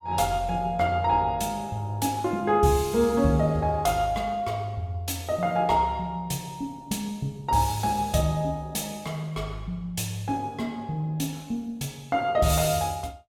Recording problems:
none

